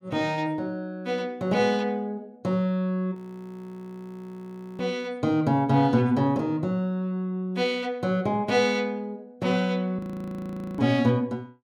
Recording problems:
frozen audio; at 3 s for 1.5 s and at 10 s for 1 s

